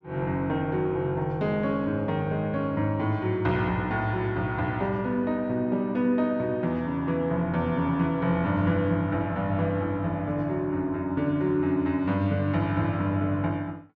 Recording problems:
none

